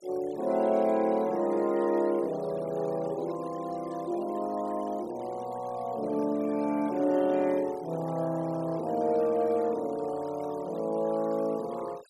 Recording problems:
noise reduction artefacts; signal-to-artefact ratio 23 dB

